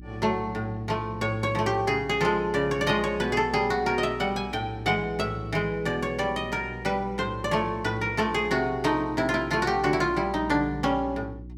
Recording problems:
electrical hum; 60 Hz, harmonics up to 360 Hz, SNR 16 dB

